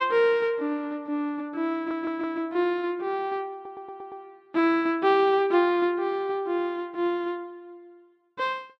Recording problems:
audio stuttering; at 1.5 s and at 3.5 s

